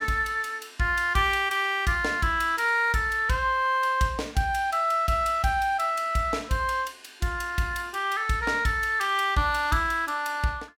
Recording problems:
none

